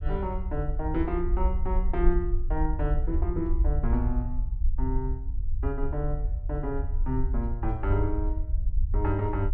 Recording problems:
low-frequency rumble; below 58 Hz, SNR -2 dB

